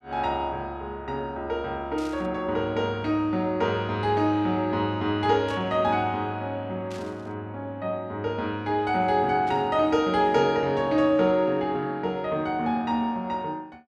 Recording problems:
static burst; 4 times, first at 2 s; peak -14 dB vs average level

